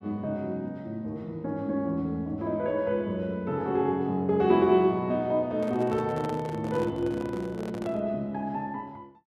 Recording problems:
handling noise; from 5.5 to 8 s; peak -6 dB vs average level

